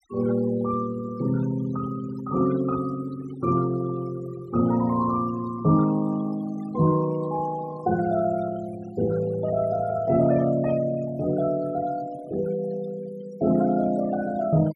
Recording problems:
denoising artefacts; signal-to-artefact ratio 18 dB

